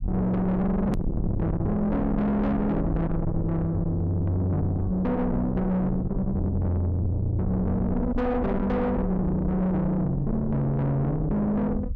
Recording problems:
distorted audio; soft clipping, signal-to-distortion ratio 5 dB
rumble; below 220 Hz, SNR 6 dB
hard cut with a click; at 1 s

